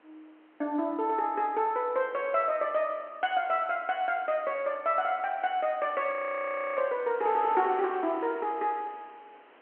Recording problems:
phone line; 240 Hz to 3.2 kHz, G.711
wind on the microphone; below 2.1 kHz, SNR 23 dB
frozen audio; at 6 s for 0.5 s

